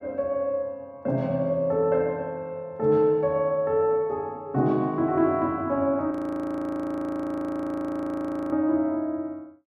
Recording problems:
audio freezing; at 6 s for 2.5 s

